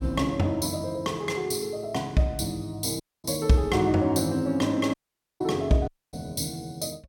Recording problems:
dropout; at 3 s, at 5 s and at 6 s

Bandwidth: 17.5 kHz